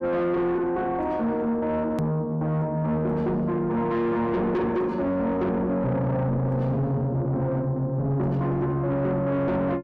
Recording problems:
distortion; soft clipping, signal-to-distortion ratio 8 dB
edit click; at 2 s

